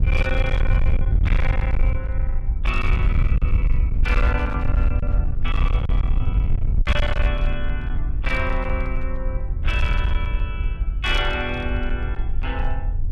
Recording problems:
distortion; hard clipping, signal-to-distortion ratio 9 dB
wind noise; below 68 Hz, SNR -5 dB

